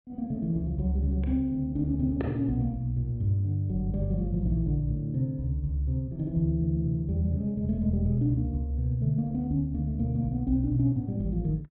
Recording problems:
treble missing; nothing above 4.1 kHz

